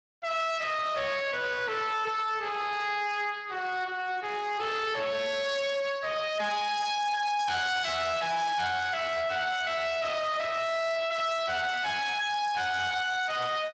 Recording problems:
codec artefacts; Speex, log-spectral distance 5 dB
distortion; hard clipping, uneven, signal-to-distortion ratio 6 dB

